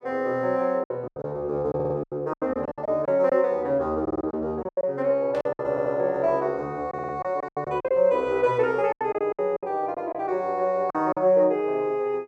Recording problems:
lost packets; 12% of the sound replaced, filled with silence
stutter; 4 times, first at 2 s
static burst; at 5.5 s; peak -13 dB vs average level

